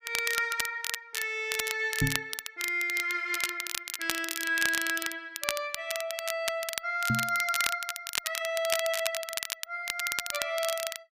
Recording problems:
crackling; vinyl, SNR 3 dB
microphone thump; at 2 s and at 7 s; peak +6 dB vs average level

